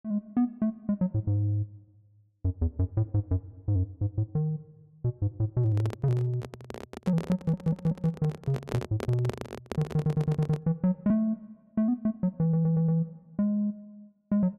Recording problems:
handling noise; from 5.5 to 11 s; peak -1 dB vs average level
stutter; at 7.5 s, at 10 s and at 12 s

